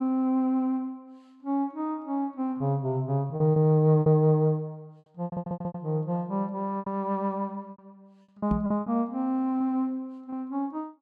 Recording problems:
packet loss; 6% of the sound replaced, filled with repeated pitch periods
audio stuttering; at 5 s
microphone bump; at 8.5 s; peak +2 dB vs average level

